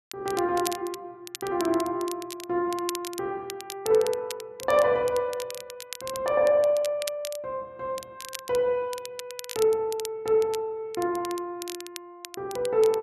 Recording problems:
crackle; vinyl, SNR 13 dB

